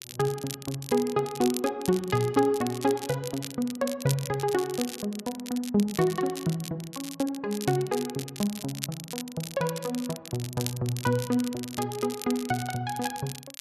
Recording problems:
crackling; vinyl, SNR 10 dB

